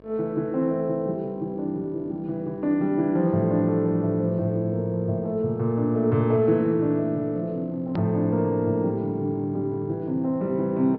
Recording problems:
low-pass filter; nothing above 5.5 kHz
hum; 50 Hz, harmonics up to 2.3 kHz, SNR 28 dB
hard cut with a click; at 8 s

